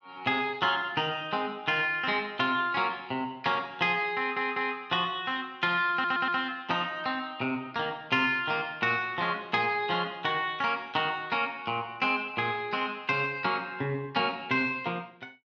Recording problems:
audio stuttering; at 4 s and at 6 s

